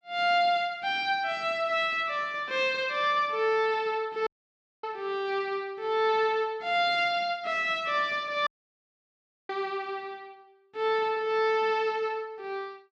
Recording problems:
dropout; at 4.5 s for 0.5 s and at 8.5 s for 1 s

